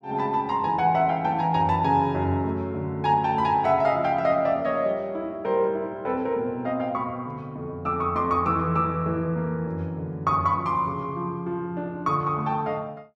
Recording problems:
none

